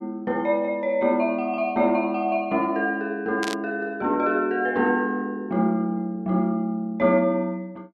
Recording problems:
burst of static; at 3.5 s; peak -4 dB vs average level

